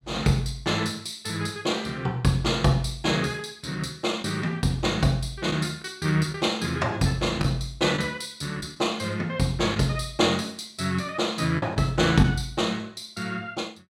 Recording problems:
packet loss; 1.9% of the sound replaced, filled with the last packet

